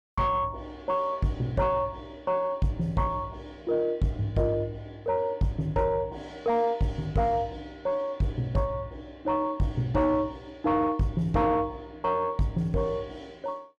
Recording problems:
distorted audio; soft clipping, signal-to-distortion ratio 10 dB

